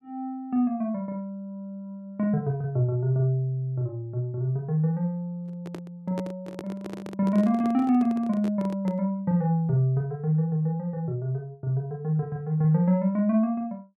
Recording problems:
microphone handling noise; from 5.5 to 9 s; peak -6 dB vs average level

